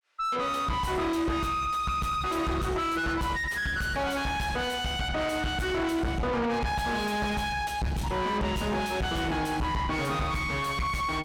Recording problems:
distortion; soft clipping, signal-to-distortion ratio 5 dB

